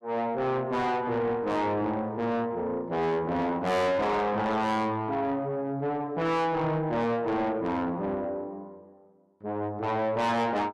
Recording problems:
distorted audio; soft clipping, signal-to-distortion ratio 7 dB

